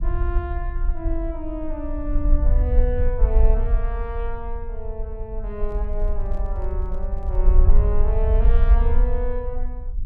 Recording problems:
rumble; below 50 Hz, SNR -8 dB
microphone handling noise; from 5.5 to 7.5 s; peak -10 dB vs average level

